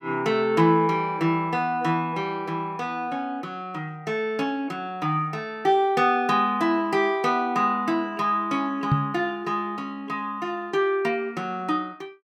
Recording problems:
microphone thump; at 9 s; peak +6 dB vs average level

